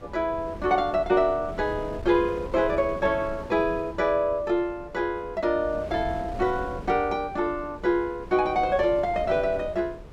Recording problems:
wind on the microphone; below 400 Hz, SNR 15 dB

